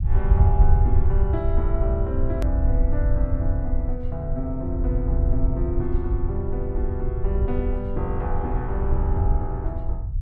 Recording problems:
rumble; below 80 Hz, SNR -6 dB
hard cut with a click; at 2.5 s

